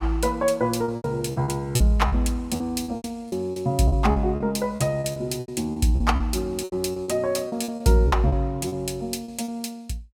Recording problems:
packet loss; 14% of the sound replaced, filled with repeated pitch periods

